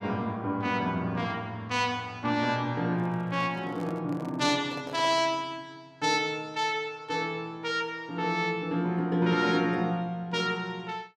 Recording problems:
handling noise; from 3 to 5.5 s; peak -10 dB vs average level

